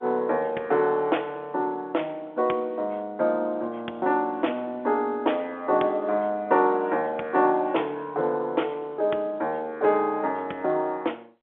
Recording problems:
telephone audio; 280 Hz to 3.6 kHz, G.711

